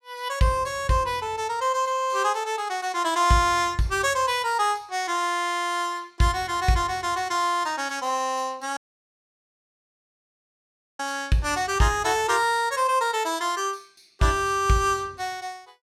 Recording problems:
audio cutting out; at 9 s for 2 s

